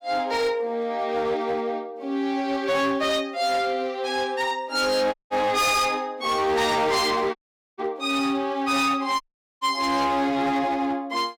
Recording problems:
distortion; hard clipping, signal-to-distortion ratio 10 dB
dropout; at 5 s, at 7.5 s and at 9 s

